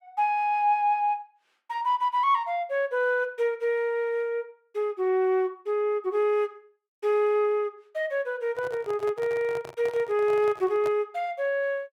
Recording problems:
handling noise; from 8.5 to 11 s; peak -7 dB vs average level

